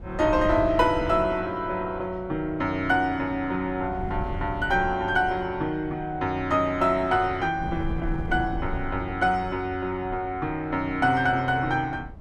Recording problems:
wind noise; below 140 Hz, SNR 13 dB

